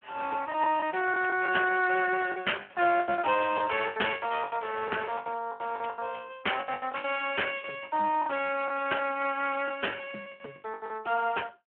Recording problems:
phone line; 260 Hz to 3.1 kHz, Speex
packet loss; 15% of the sound replaced, filled with the last packet

